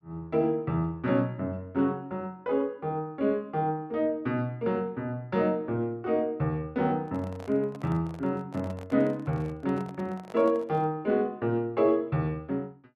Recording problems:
microphone handling noise; from 7 to 11 s; peak -12 dB vs average level

